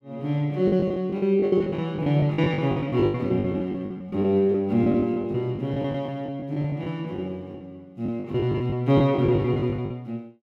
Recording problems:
lost packets; 17% of the sound replaced, filled with the last packet

